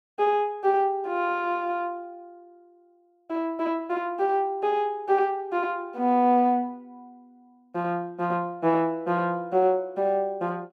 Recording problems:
none

